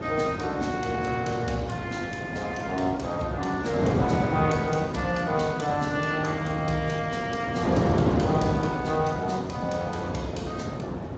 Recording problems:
lossy codec; MP3, then Speex, log-spectral distance 4 dB, nothing above 7.3 kHz
wind on the microphone; below 570 Hz, SNR 2 dB

